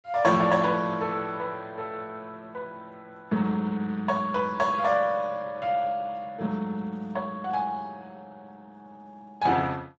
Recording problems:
lossy compression; Speex, log-spectral distance 3 dB, nothing above 7.6 kHz

